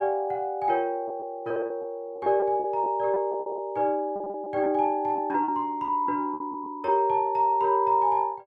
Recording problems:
lost packets; 10% of the sound replaced, filled with repeated pitch periods

